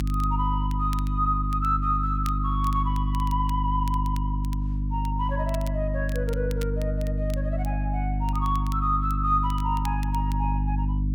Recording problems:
hum; 50 Hz, harmonics up to 300 Hz, SNR -1 dB
crackle; vinyl, SNR 19 dB

